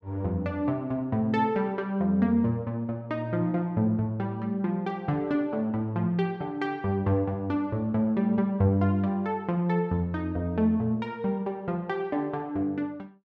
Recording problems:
none

